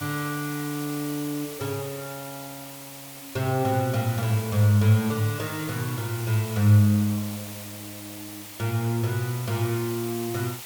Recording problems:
hiss; SNR 12 dB

